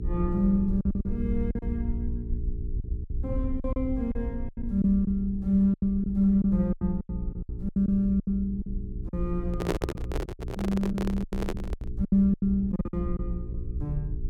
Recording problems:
hum; 60 Hz, harmonics up to 420 Hz, SNR 11 dB
rumble; below 66 Hz, SNR 9 dB
packet loss; 13% of the sound replaced, filled with silence
handling noise; from 9.5 to 12 s; peak +4 dB vs average level

